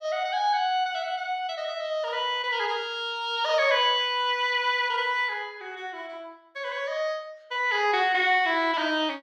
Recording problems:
none

